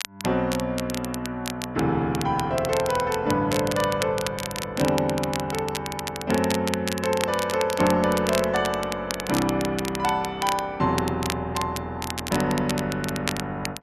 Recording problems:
crackle; vinyl, SNR 8 dB

